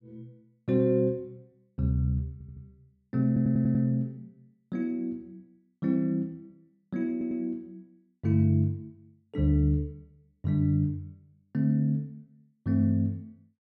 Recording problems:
audio stuttering; at 2.5 s, at 3.5 s and at 7 s

